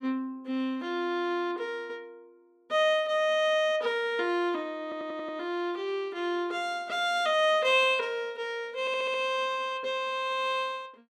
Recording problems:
stutter; at 5 s and at 9 s

